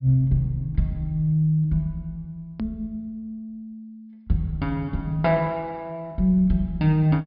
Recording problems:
treble cut off; nothing above 5.5 kHz
hard cut with a click; at 2.5 s

